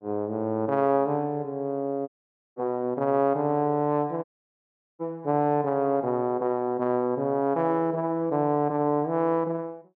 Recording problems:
audio cutting out; at 2 s and at 4 s for 1 s

